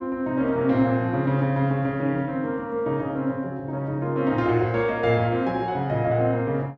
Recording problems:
none

